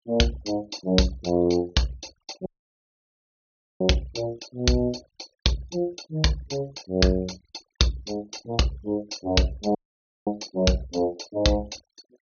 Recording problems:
treble cut off; nothing above 6.5 kHz
noise reduction artefacts; signal-to-artefact ratio 22 dB
dropout; at 2.5 s for 1.5 s and at 10 s for 0.5 s

